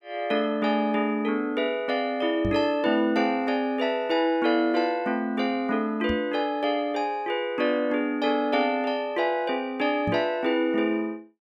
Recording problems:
knock on the microphone; at 2.5 s, at 6 s and at 10 s; peak -1 dB vs average level

